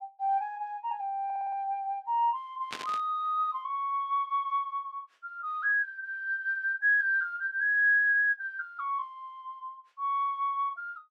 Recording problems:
audio stuttering; at 1.5 s
static burst; at 2.5 s; peak -3 dB vs average level

